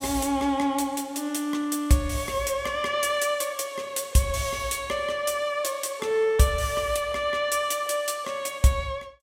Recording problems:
none

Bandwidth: 16 kHz